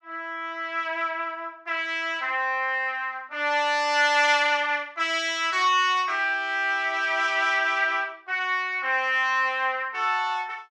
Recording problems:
none

